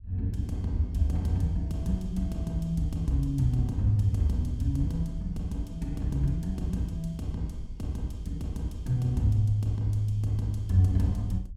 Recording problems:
low-frequency rumble; below 72 Hz, SNR 16 dB

